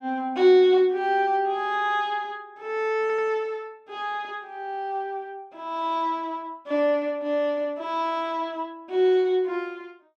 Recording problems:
stutter; at 3 s

